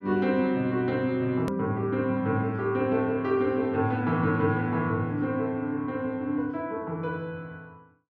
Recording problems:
click at an edit; at 1.5 s

